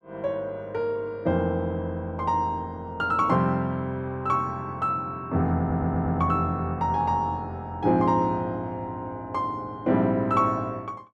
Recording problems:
stutter; at 5.5 s

